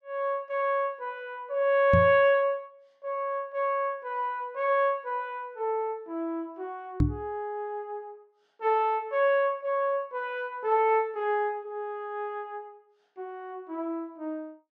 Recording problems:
microphone thump; at 2 s and at 7 s; peak +7 dB vs average level

